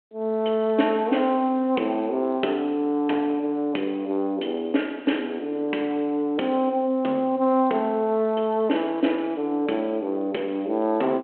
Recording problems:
phone line; 240 Hz to 3.3 kHz, G.726

